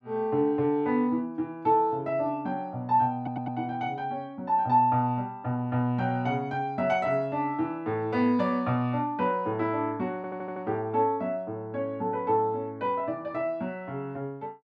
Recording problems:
stutter; at 3 s and at 10 s

